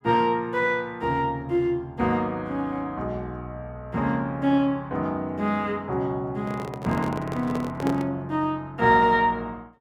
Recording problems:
handling noise; from 6.5 to 8 s; peak -2 dB vs average level

